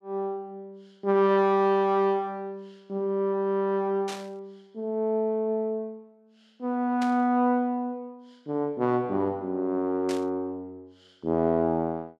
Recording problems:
burst of static; at 4 s, at 7 s and at 10 s; peak -7 dB vs average level

